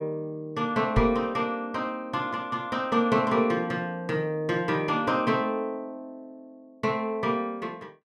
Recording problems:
microphone thump; at 1 s; peak +6 dB vs average level

